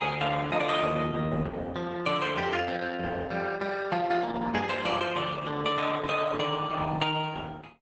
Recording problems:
lossy compression; Opus, log-spectral distance 5 dB, nothing above 8 kHz

